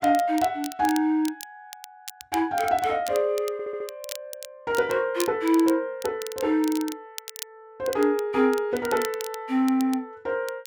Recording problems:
crackle; vinyl, SNR 15 dB
audio stuttering; at 3.5 s

